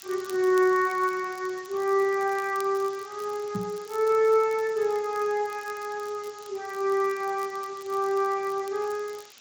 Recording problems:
lossy compression; Speex, then Speex, log-spectral distance 10 dB
background hiss; slope +2 dB per octave, SNR 21 dB
crackling; vinyl, SNR 23 dB
microphone bump; at 3.5 s; peak -3 dB vs average level

